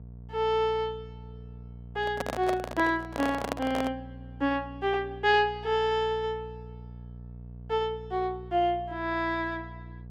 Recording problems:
hum; 60 Hz, harmonics up to 480 Hz, SNR 16 dB
handling noise; from 2 to 4 s; peak +2 dB vs average level

